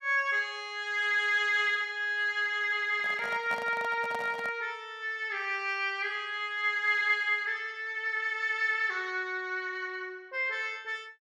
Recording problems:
handling noise; from 3 to 4.5 s; peak -6 dB vs average level

